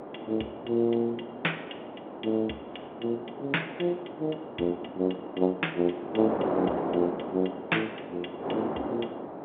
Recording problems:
phone line; 280 Hz to 3.4 kHz, G.711
wind on the microphone; below 770 Hz, SNR 5 dB

